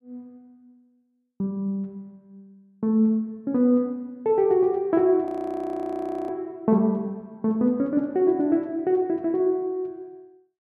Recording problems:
audio freezing; at 5.5 s for 1 s

